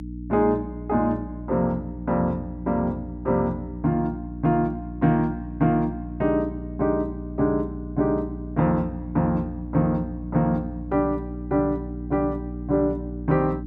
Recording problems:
electrical hum; 60 Hz, harmonics up to 300 Hz, SNR 9 dB

